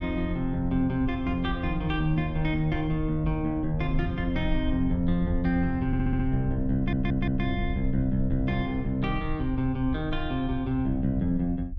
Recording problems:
low-frequency rumble; below 70 Hz, SNR 8 dB
stutter; at 6 s and at 7 s

